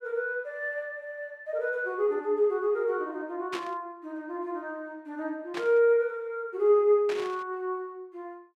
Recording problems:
burst of static; at 3.5 s, at 5.5 s and at 7 s; peak -4 dB vs average level

